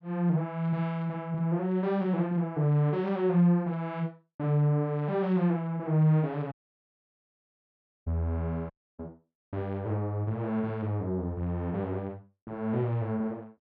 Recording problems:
audio cutting out; at 6.5 s for 1.5 s and at 8.5 s

